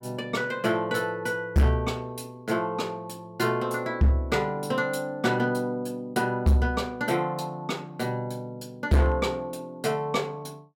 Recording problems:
distortion; hard clipping, signal-to-distortion ratio 8 dB

